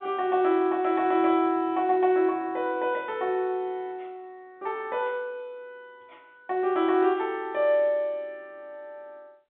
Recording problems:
telephone audio; 170 Hz to 3.8 kHz, G.711

